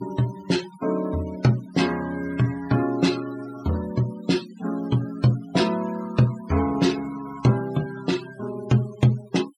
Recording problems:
denoising artefacts; signal-to-artefact ratio 16 dB

